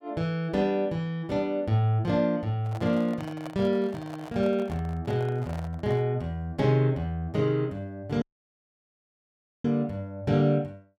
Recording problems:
handling noise; from 2.5 to 6 s; peak -8 dB vs average level
audio cutting out; at 8 s for 1.5 s

